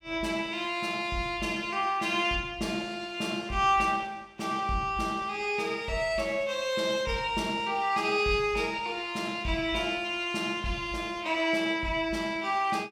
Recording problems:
none

